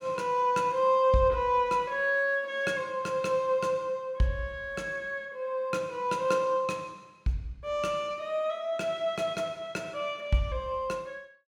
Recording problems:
none

